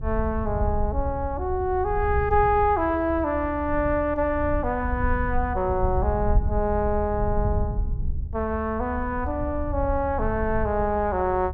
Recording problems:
low-frequency rumble; below 84 Hz, SNR 6 dB

